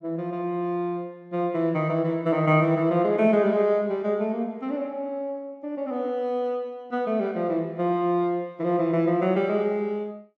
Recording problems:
none

